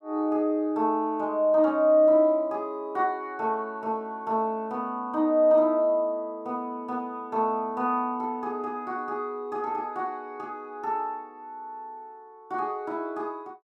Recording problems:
none

